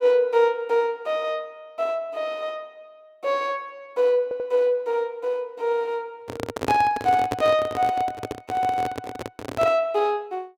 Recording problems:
audio stuttering; at 4 s
handling noise; from 6 to 10 s; peak +1 dB vs average level

